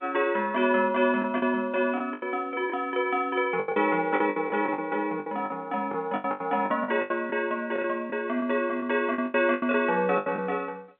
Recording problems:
phone line; 190 Hz to 3.4 kHz, G.711
lost packets; 13% of the sound replaced, filled with the last packet

